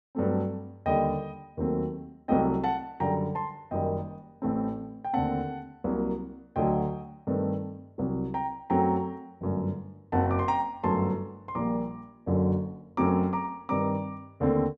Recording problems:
none

